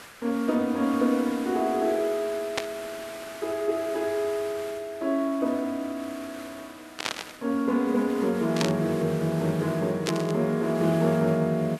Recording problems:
hiss; SNR 16 dB
burst of static; 4 times, first at 2.5 s; peak +3 dB vs average level

